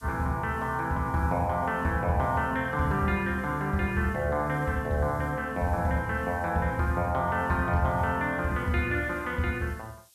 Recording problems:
background hiss; SNR 28 dB

